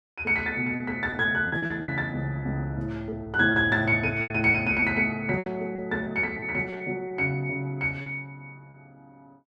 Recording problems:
lost packets; 9% of the sound replaced, filled with repeated pitch periods

